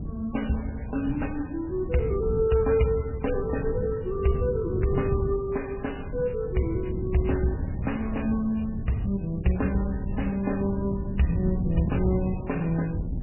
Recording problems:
lossy compression; MP3, log-spectral distance 7 dB, nothing above 2.9 kHz
wind noise; below 170 Hz, SNR 6 dB

